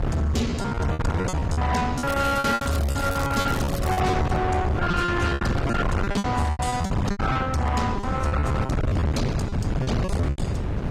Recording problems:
lossy compression; AAC, log-spectral distance 3 dB, nothing above 14.7 kHz
distorted audio; soft clipping, signal-to-distortion ratio 8 dB
hum; 50 Hz, harmonics up to 600 Hz, SNR 18 dB
wind on the microphone; below 430 Hz, SNR 1 dB
packet loss; 20% of the sound replaced, filled with repeated pitch periods
crackling; from 2 to 4 s; loose cable, SNR 12 dB

